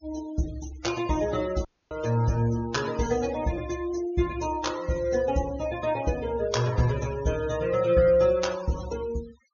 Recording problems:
treble missing; nothing above 6.8 kHz
noise reduction artefacts; signal-to-artefact ratio 17 dB
dropout; at 1.5 s

